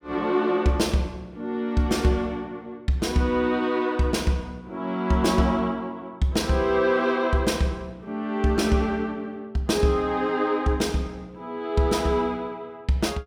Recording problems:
none

